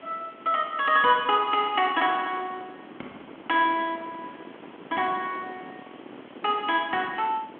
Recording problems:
phone line; 220 Hz to 3.4 kHz, G.726
hiss; SNR 27 dB
wind on the microphone; below 750 Hz, SNR 21 dB

